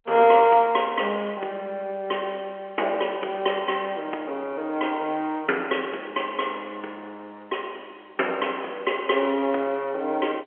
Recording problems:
telephone audio; 300 Hz to 3.3 kHz, G.711

